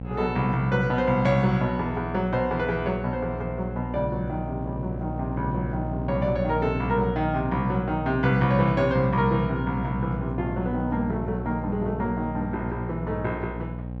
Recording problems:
hum; 60 Hz, harmonics up to 840 Hz, SNR 7 dB

